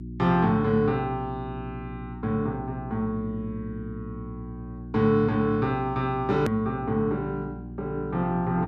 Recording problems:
hum; 60 Hz, harmonics up to 360 Hz, SNR 12 dB
hard cut with a click; at 6.5 s

